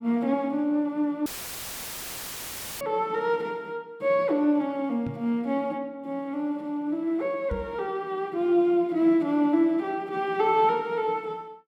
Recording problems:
dropout; at 1.5 s for 1.5 s; filled with static
microphone thump; at 3 s, at 5 s and at 7.5 s; peak -2 dB vs average level

